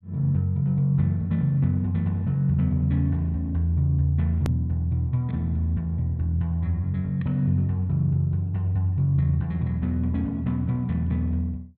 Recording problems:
hard cut with a click; at 4.5 s

